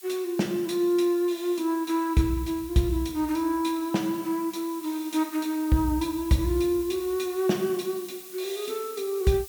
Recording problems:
hiss; slope +4 dB per octave, SNR 16 dB

